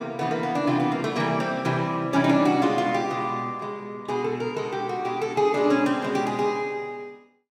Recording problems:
none

